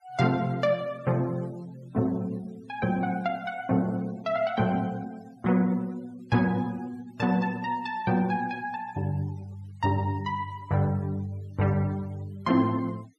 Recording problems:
denoising artefacts; signal-to-artefact ratio 26 dB

